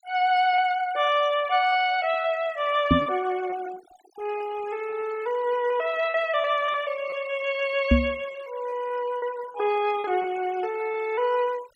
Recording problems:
noise reduction artefacts; signal-to-artefact ratio 19 dB
packet loss; 5% of the sound replaced, filled with repeated pitch periods
knock on the microphone; at 3 s and at 8 s; peak +9 dB vs average level

